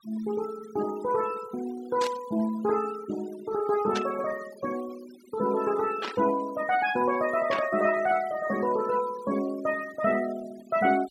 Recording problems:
denoising artefacts; signal-to-artefact ratio 17 dB
static burst; 4 times, first at 2 s; peak -1 dB vs average level

